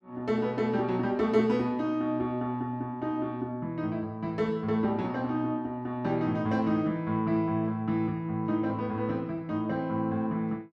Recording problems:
none

